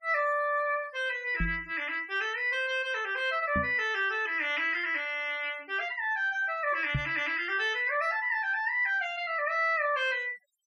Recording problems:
denoising artefacts; signal-to-artefact ratio 26 dB
microphone bump; at 1.5 s, at 3.5 s and at 7 s; peak +2 dB vs average level

